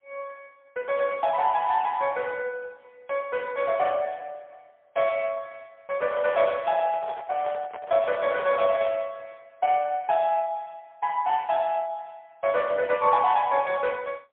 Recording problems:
telephone audio; 130 Hz to 3.3 kHz, AMR-NB, then MP3
handling noise; from 6 to 9 s; peak -7 dB vs average level

